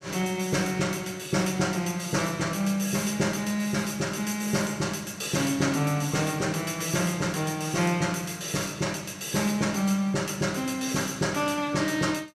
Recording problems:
none

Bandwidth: 15 kHz